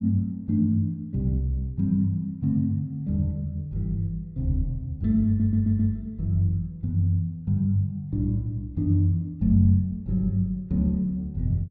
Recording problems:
stutter; at 5.5 s

